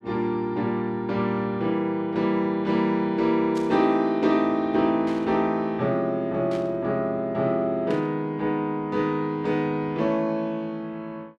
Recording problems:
burst of static; 4 times, first at 3.5 s; peak -11 dB vs average level

